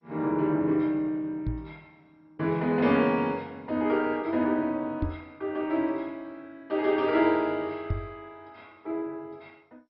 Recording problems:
lossy codec; MP2, log-spectral distance 2 dB, nothing above 5.3 kHz
knock on the microphone; at 1.5 s, at 5 s and at 8 s; peak +2 dB vs average level

